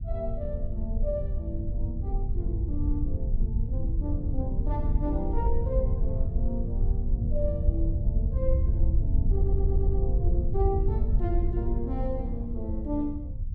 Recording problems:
low-frequency rumble; below 78 Hz, SNR -6 dB
audio stuttering; at 9.5 s

